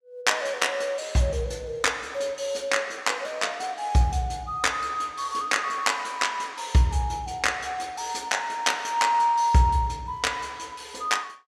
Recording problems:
none

